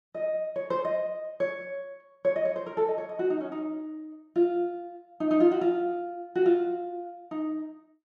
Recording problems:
none

